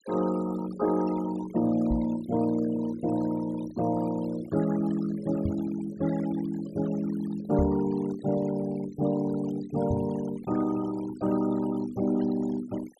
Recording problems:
denoising artefacts; signal-to-artefact ratio 16 dB
knock on the microphone; 4 times, first at 2 s; peak +2 dB vs average level

